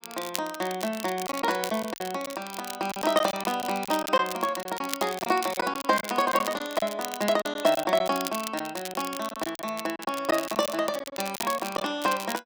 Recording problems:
crackling; vinyl, SNR 10 dB
lost packets; 8% of the sound replaced, filled with silence

